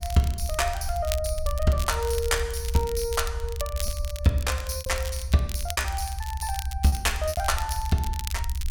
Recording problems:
rumble; below 72 Hz, SNR 5 dB
crackle; vinyl, SNR 11 dB
packet loss; 4% of the sound replaced, filled with repeated pitch periods

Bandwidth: 17.5 kHz